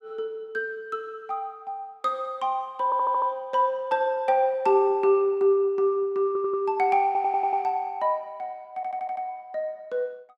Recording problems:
stutter; 4 times, first at 3 s

